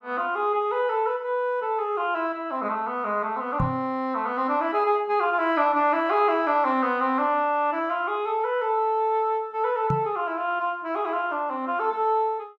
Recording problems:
microphone bump; at 3.5 s and at 10 s; peak +2 dB vs average level

